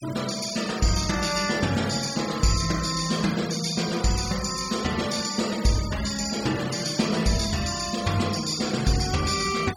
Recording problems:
noise reduction artefacts; signal-to-artefact ratio 12 dB

